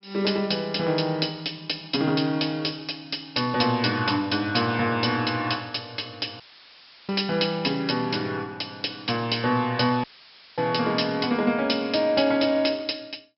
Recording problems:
treble missing; nothing above 5.4 kHz
audio cutting out; at 6.5 s for 0.5 s and at 10 s for 0.5 s; filled with static

